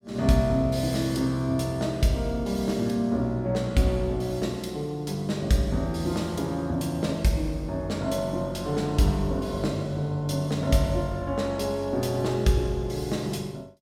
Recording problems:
none

